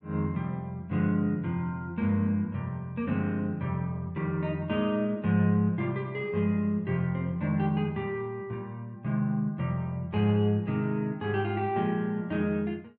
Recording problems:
none

